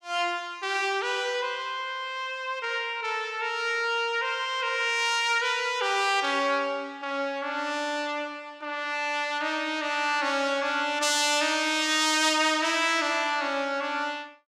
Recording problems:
none

